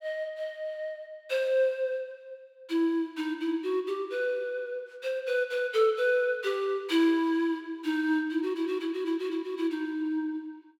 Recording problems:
none

